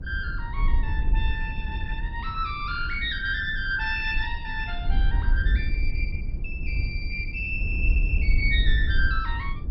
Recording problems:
lossy compression; MP2, log-spectral distance 2 dB, nothing above 4.8 kHz
rumble; below 94 Hz, SNR 8 dB
wind on the microphone; below 58 Hz, SNR -1 dB

